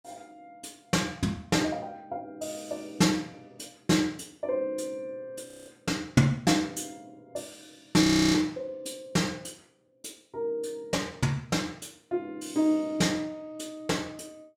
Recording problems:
frozen audio; at 5.5 s and at 8 s

